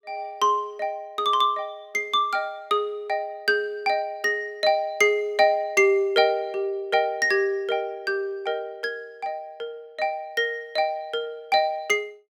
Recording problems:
none

